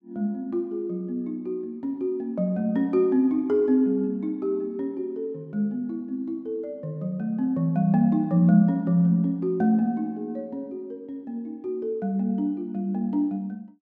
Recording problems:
none

